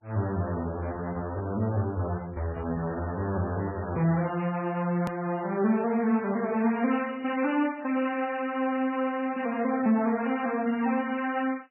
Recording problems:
codec artefacts; MP3, log-spectral distance 3 dB, nothing above 2.4 kHz
edit click; at 5 s

